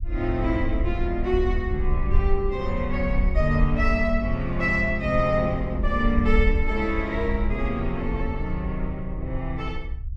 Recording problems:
low-frequency rumble; below 64 Hz, SNR 3 dB

